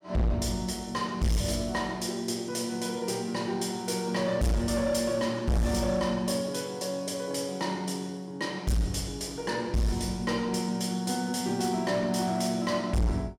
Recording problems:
distorted audio; hard clipping, signal-to-distortion ratio 6 dB

